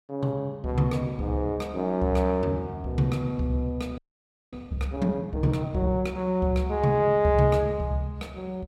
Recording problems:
audio freezing; at 4 s for 0.5 s

